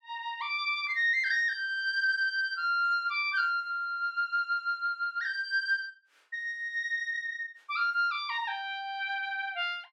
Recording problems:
none

